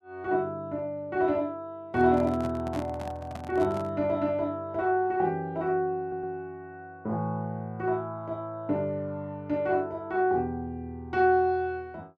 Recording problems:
handling noise; from 2 to 4 s; peak -6 dB vs average level
stutter; at 6 s

